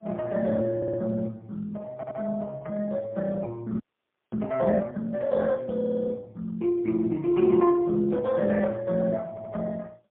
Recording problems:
telephone audio; 190 Hz to 3.4 kHz, AMR-NB, then MP3
stutter; 4 times, first at 1 s
frozen audio; at 4 s for 0.5 s

